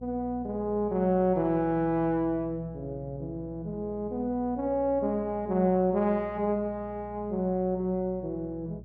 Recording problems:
hum; 60 Hz, harmonics up to 420 Hz, SNR 18 dB

